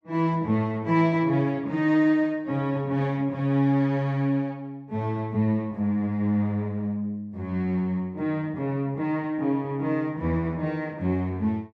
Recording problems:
none

